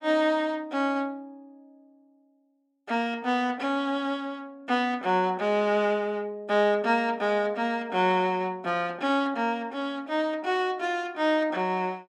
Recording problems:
none

